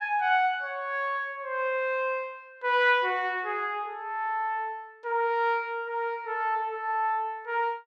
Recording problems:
none

